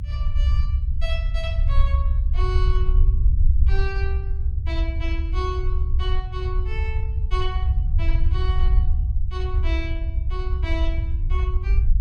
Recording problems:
low-frequency rumble; below 68 Hz, SNR -11 dB

